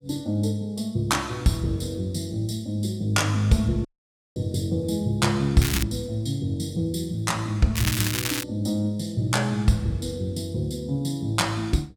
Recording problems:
audio cutting out; at 4 s for 0.5 s
crackle; at 5.5 s and at 8 s; loose cable, SNR 3 dB

